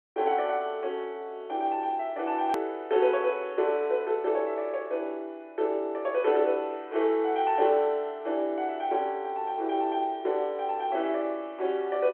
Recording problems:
telephone audio; 280 Hz to 3.4 kHz, G.711
hard cut with a click; at 2.5 s

